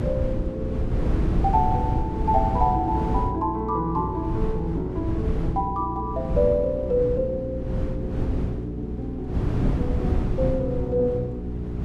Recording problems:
hum; 60 Hz, harmonics up to 420 Hz, SNR 6 dB
wind noise; below 170 Hz, SNR 2 dB

